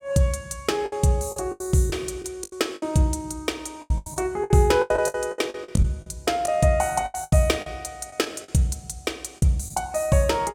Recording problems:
lost packets; 13% of the sound replaced, filled with the last packet

